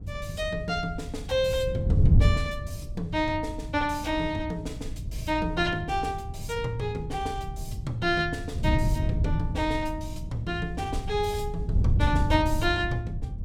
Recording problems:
wind noise; below 120 Hz, SNR 1 dB

